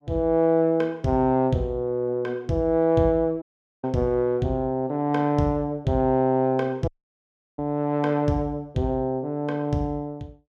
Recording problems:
dropout; at 3.5 s and at 7 s for 0.5 s

